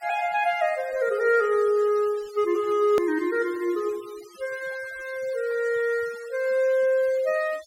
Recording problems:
noise reduction artefacts; signal-to-artefact ratio 23 dB
hard cut with a click; at 3 s

